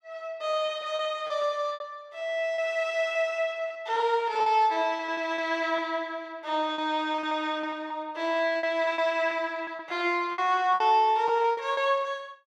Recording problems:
packet loss; 11% of the sound replaced, filled with repeated pitch periods

